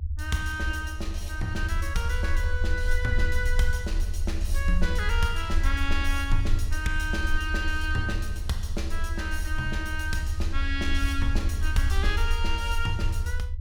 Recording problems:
rumble; below 68 Hz, SNR 0 dB

